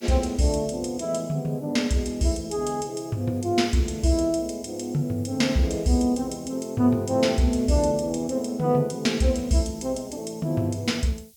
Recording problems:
hiss; SNR 28 dB

